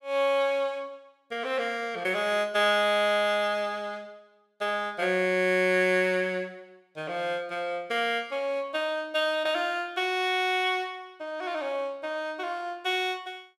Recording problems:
none

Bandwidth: 14.5 kHz